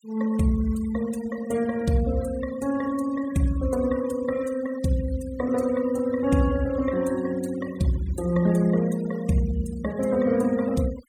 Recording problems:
denoising artefacts; signal-to-artefact ratio 19 dB

